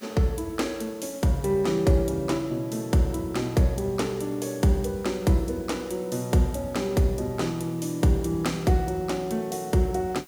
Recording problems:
hiss; slope -2 dB per octave, SNR 25 dB

